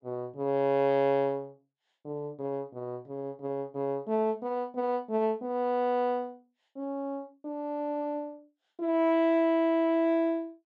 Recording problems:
none

